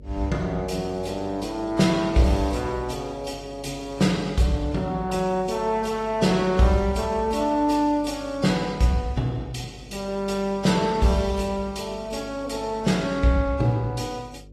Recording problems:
lossy compression; AAC, log-spectral distance 3 dB, nothing above 13.8 kHz
hum; 50 Hz, harmonics up to 600 Hz, SNR 21 dB

